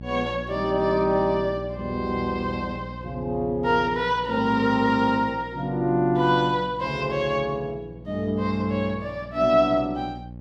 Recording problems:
electrical hum; 60 Hz, harmonics up to 840 Hz, SNR 16 dB

